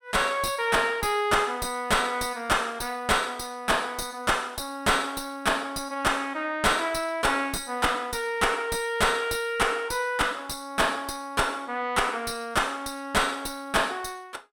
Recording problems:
distortion; soft clipping, signal-to-distortion ratio 6 dB

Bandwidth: 17 kHz